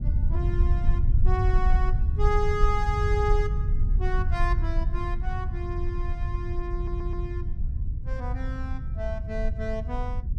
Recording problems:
low-frequency rumble; below 72 Hz, SNR -5 dB
stutter; at 7 s

